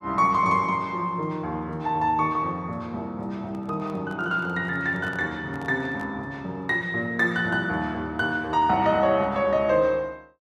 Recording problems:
handling noise; from 3.5 to 6 s; peak -13 dB vs average level

